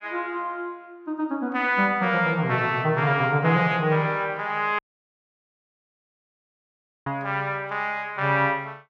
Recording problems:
audio cutting out; at 5 s for 2.5 s

